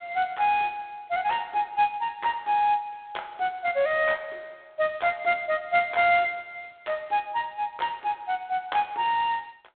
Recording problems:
phone line; 280 Hz to 4 kHz, G.726

